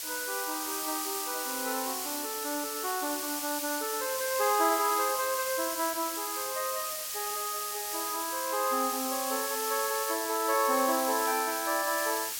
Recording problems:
hiss; slope +3 dB per octave, SNR 2 dB

